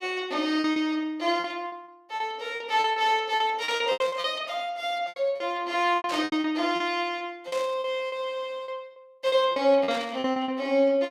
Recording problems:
packet loss; 13% of the sound replaced, filled with repeated pitch periods
burst of static; 4 times, first at 4 s; peak -6 dB vs average level

